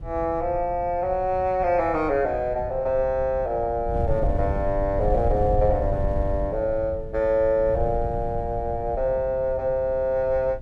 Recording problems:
wind noise; below 100 Hz, SNR 8 dB

